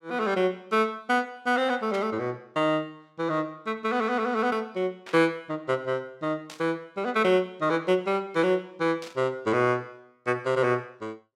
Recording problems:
burst of static; 4 times, first at 2 s; peak -10 dB vs average level

